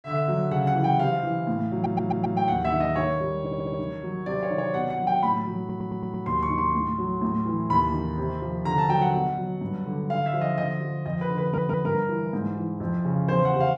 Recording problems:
stutter; 4 times, first at 1.5 s

